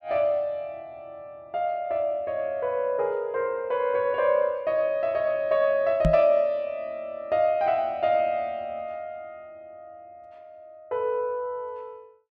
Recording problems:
microphone bump; at 6 s; peak +5 dB vs average level

